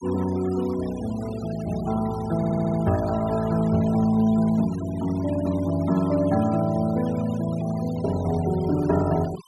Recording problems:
denoising artefacts; signal-to-artefact ratio 18 dB
stutter; at 2.5 s

